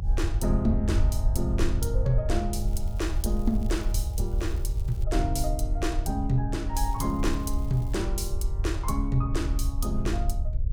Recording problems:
hum; 50 Hz, harmonics up to 600 Hz, SNR 22 dB
rumble; below 72 Hz, SNR -1 dB
crackle; from 2.5 to 5 s and from 7 to 8 s; loose cable, SNR 24 dB

